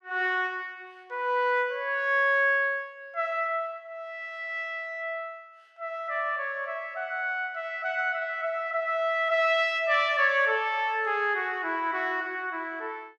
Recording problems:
none

